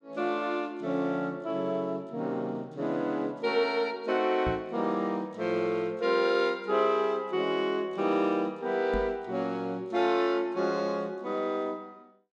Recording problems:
microphone thump; at 4.5 s and at 9 s; peak -1 dB vs average level

